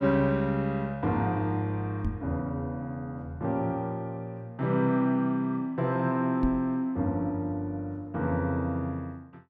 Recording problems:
microphone thump; at 2 s and at 6.5 s; peak +2 dB vs average level

